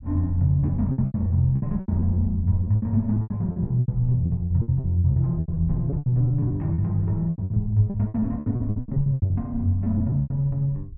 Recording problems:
rumble; below 82 Hz, SNR 15 dB
lost packets; 20% of the sound replaced, filled with repeated pitch periods

